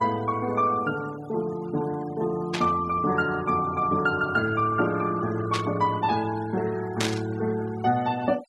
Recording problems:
denoising artefacts; signal-to-artefact ratio 18 dB
burst of static; at 2.5 s, at 5.5 s and at 7 s; peak +3 dB vs average level

